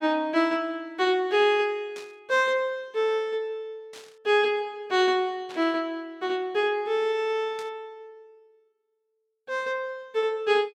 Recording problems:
static burst; 4 times, first at 2 s; peak -13 dB vs average level

